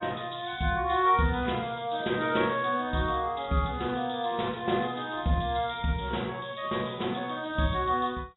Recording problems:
codec artefacts; AAC, log-spectral distance 8 dB, nothing above 3.8 kHz

